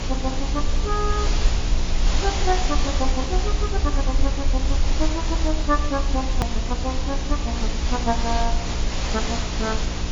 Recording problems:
lossy compression; MP3, log-spectral distance 6 dB
hum; 60 Hz, harmonics up to 600 Hz, SNR 5 dB
hiss; slope -2 dB per octave, SNR 2 dB
low-frequency rumble; below 54 Hz, SNR -1 dB
hard cut with a click; at 6.5 s

